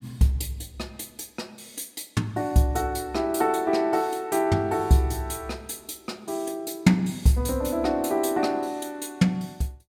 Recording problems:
none

